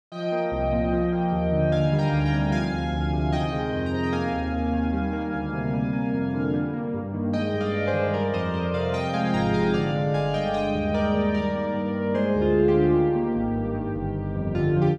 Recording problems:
none

